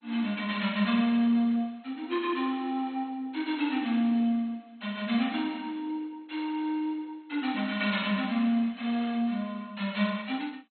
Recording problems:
lossy codec; MP2, log-spectral distance 4 dB, nothing above 4.1 kHz

